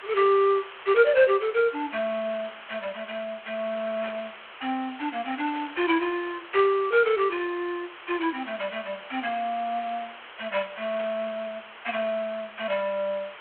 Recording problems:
phone line; 320 Hz to 3.4 kHz, G.726
background hiss; SNR 16 dB
static burst; at 4 s, at 5.5 s and at 11 s; peak -9 dB vs average level

